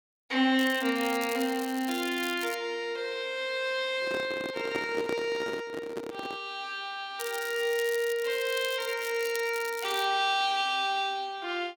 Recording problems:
crackling; from 0.5 to 2.5 s and from 7 to 10 s; loose cable, SNR 12 dB
microphone handling noise; from 4 to 6.5 s; peak 0 dB vs average level

